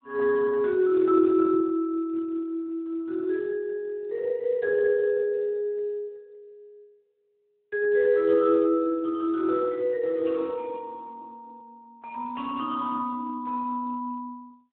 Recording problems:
phone line; 340 Hz to 2.8 kHz, Speex

